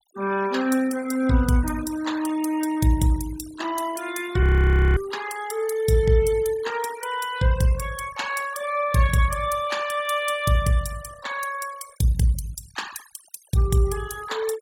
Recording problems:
denoising artefacts; signal-to-artefact ratio 16 dB
frozen audio; at 4.5 s for 0.5 s

